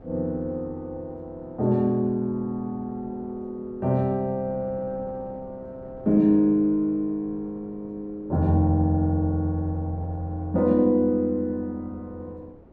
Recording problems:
wind noise; below 450 Hz, SNR 23 dB

